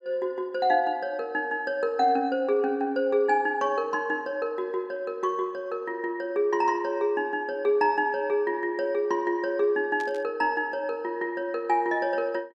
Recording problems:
burst of static; at 10 s; peak -13 dB vs average level

